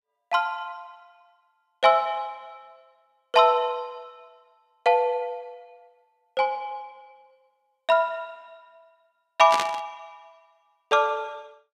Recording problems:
static burst; at 9.5 s; peak 0 dB vs average level

